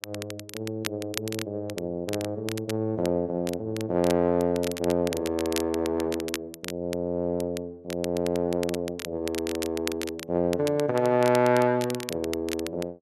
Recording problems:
crackle; vinyl, SNR 11 dB

